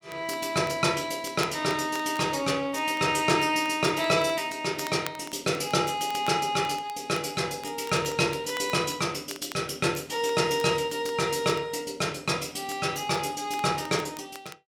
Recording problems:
crackle; vinyl, SNR 20 dB

